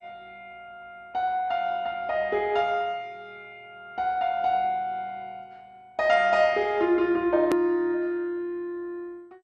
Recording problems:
codec artefacts; MP2, log-spectral distance 2 dB, nothing above 13.1 kHz
click at an edit; at 7.5 s

